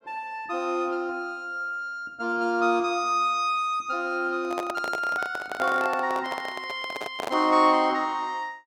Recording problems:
handling noise; from 4.5 to 7.5 s; peak -2 dB vs average level

